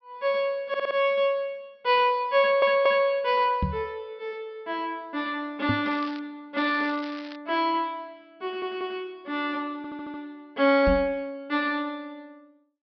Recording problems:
low-pass filter; nothing above 5.5 kHz
audio stuttering; 4 times, first at 0.5 s
knock on the microphone; at 3.5 s, at 5.5 s and at 11 s; peak +3 dB vs average level
crackling; at 6 s and at 6.5 s; loose cable, SNR 19 dB

